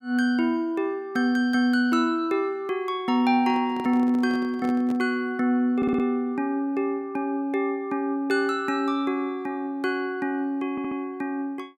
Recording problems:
handling noise; from 3.5 to 5 s; peak -8 dB vs average level
stutter; at 6 s and at 11 s

